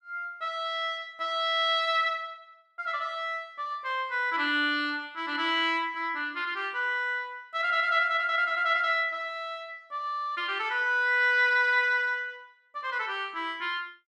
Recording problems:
none

